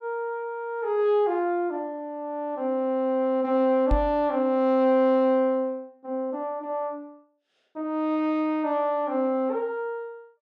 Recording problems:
knock on the microphone; at 4 s; peak +3 dB vs average level

